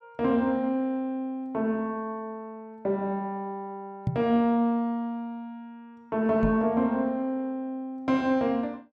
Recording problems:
microphone bump; at 4 s and at 6.5 s; peak +3 dB vs average level

